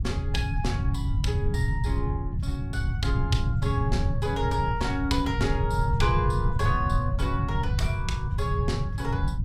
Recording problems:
rumble; below 130 Hz, SNR -3 dB

